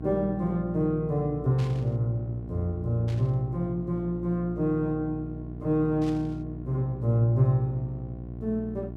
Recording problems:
hum; 60 Hz, harmonics up to 780 Hz, SNR 11 dB
burst of static; at 1.5 s, at 3 s and at 6 s; peak -13 dB vs average level

